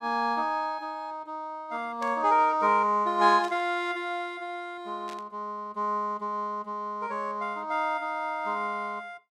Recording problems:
static burst; at 2 s, at 3.5 s and at 5 s; peak -12 dB vs average level

